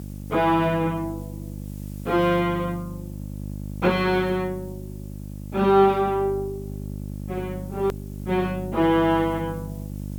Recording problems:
electrical hum; 50 Hz, harmonics up to 600 Hz, SNR 12 dB
hiss; slope +1 dB per octave, SNR 27 dB
hard cut with a click; at 8 s

